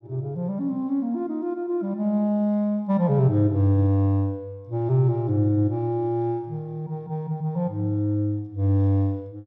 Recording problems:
none

